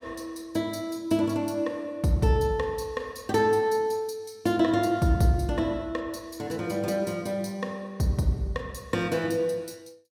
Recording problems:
none

